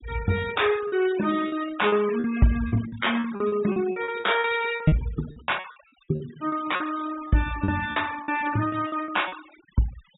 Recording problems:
low-pass filter; nothing above 4 kHz
denoising artefacts; signal-to-artefact ratio 15 dB
lost packets; 13% of the sound replaced, filled with repeated pitch periods

